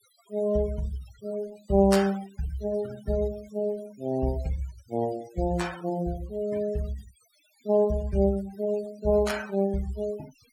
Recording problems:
noise reduction artefacts; signal-to-artefact ratio 19 dB

